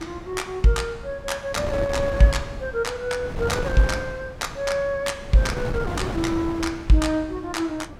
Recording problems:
wind noise; below 510 Hz, SNR 9 dB

